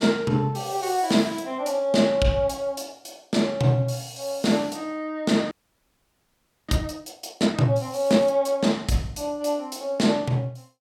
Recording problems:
audio freezing; at 5.5 s for 1 s

